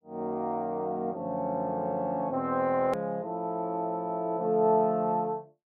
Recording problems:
hard cut with a click; at 3 s

